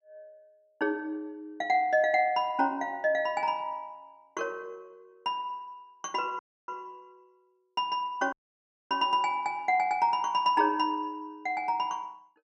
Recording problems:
dropout; at 6.5 s and at 8.5 s for 0.5 s

